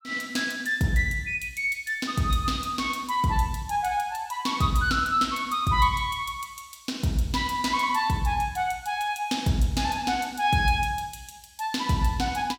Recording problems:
none

